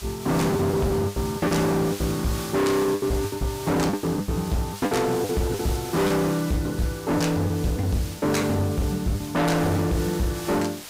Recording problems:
distortion; hard clipping, signal-to-distortion ratio 6 dB
background hiss; SNR 13 dB
packet loss; 10% of the sound replaced, filled with the last packet

